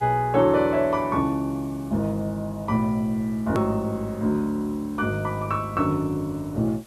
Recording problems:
hiss; SNR 27 dB
click at an edit; at 3.5 s

